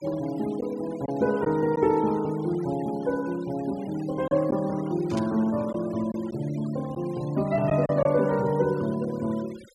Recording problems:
noise reduction artefacts; signal-to-artefact ratio 20 dB
lost packets; 2% of the sound replaced, filled with silence
burst of static; at 5 s; peak -10 dB vs average level

